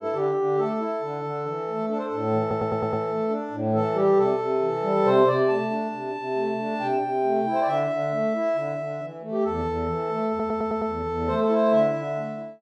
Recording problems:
stutter; at 2.5 s and at 10 s

